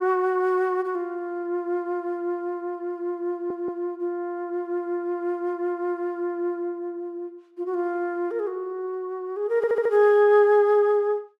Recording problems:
stutter; at 3.5 s and at 9.5 s

